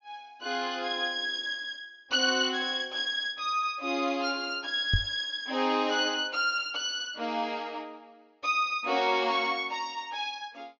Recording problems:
low-pass filter; nothing above 6.8 kHz
knock on the microphone; at 5 s; peak +5 dB vs average level

